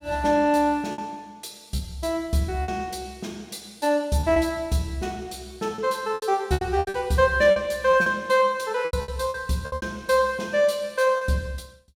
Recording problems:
packet loss; 9% of the sound replaced, filled with repeated pitch periods

